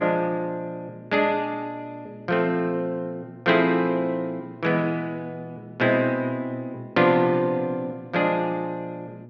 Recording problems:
mains hum; 60 Hz, harmonics up to 840 Hz, SNR 21 dB

